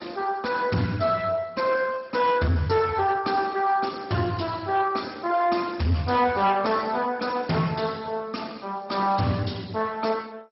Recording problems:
codec artefacts; Speex, then MP2, log-spectral distance 5 dB, nothing above 5.5 kHz
distortion; hard clipping, signal-to-distortion ratio 11 dB

